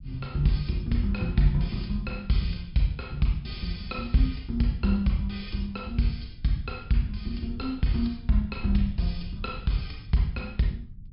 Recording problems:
treble missing; nothing above 5.5 kHz
rumble; below 98 Hz, SNR 17 dB

